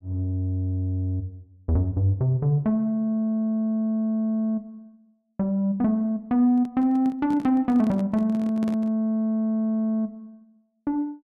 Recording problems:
microphone handling noise; from 6.5 to 9 s; peak -7 dB vs average level

